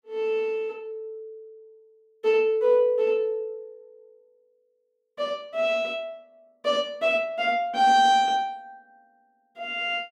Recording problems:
none

